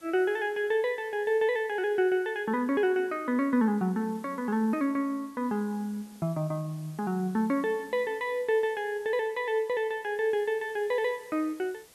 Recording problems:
hiss; slope -2 dB per octave, SNR 27 dB

